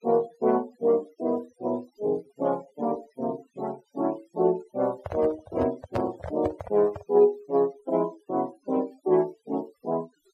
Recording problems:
noise reduction artefacts; signal-to-artefact ratio 24 dB
microphone handling noise; from 5 to 7 s; peak +1 dB vs average level

